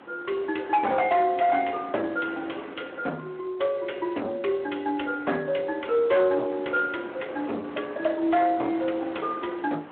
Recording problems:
phone line; 240 Hz to 3.4 kHz, Speex
distortion; soft clipping, signal-to-distortion ratio 11 dB
wind on the microphone; below 1.3 kHz, SNR 17 dB

